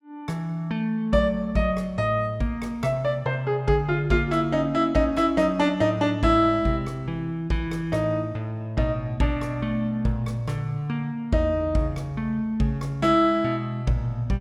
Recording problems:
none

